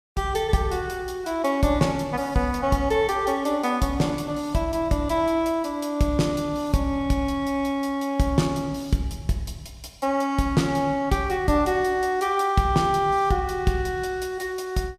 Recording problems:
none

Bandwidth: 15.5 kHz